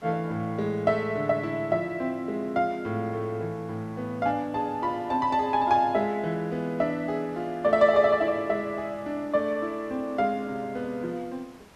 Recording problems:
hiss; slope -5 dB per octave, SNR 26 dB

